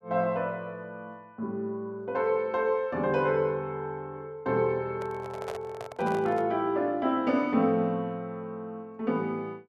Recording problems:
microphone handling noise; from 5 to 6.5 s; peak -5 dB vs average level

